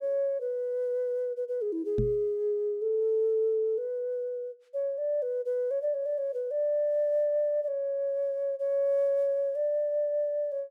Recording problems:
microphone thump; at 2 s; peak +2 dB vs average level

